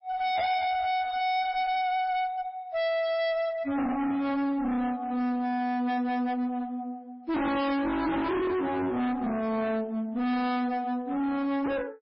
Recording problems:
lossy codec; MP3, log-spectral distance 2 dB, nothing above 5.3 kHz
distortion; hard clipping, uneven, signal-to-distortion ratio 5 dB

